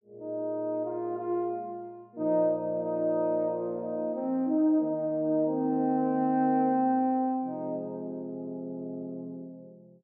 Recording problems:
none

